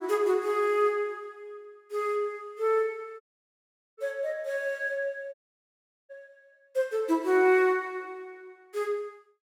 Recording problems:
audio cutting out; at 3 s for 1 s and at 5.5 s for 1 s

